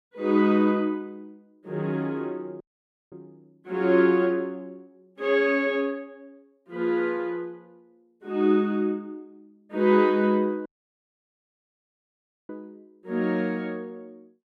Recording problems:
dropout; at 2.5 s for 0.5 s and at 11 s for 2 s

